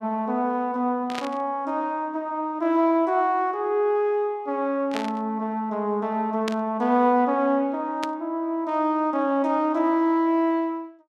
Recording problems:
burst of static; 4 times, first at 1 s; peak -3 dB vs average level

